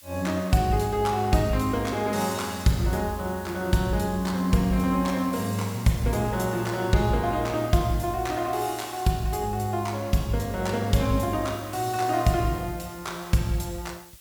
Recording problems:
hiss; slope +2 dB per octave, SNR 20 dB

